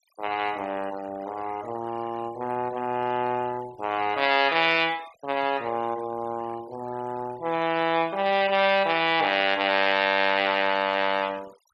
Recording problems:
noise reduction artefacts; signal-to-artefact ratio 21 dB

